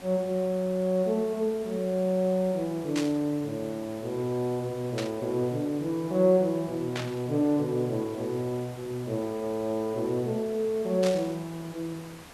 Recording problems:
hiss; slope -4 dB per octave, SNR 19 dB
burst of static; 4 times, first at 3 s; peak -2 dB vs average level

